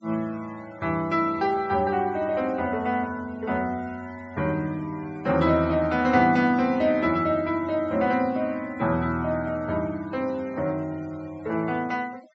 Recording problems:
treble cut off; nothing above 8 kHz
noise reduction artefacts; signal-to-artefact ratio 25 dB

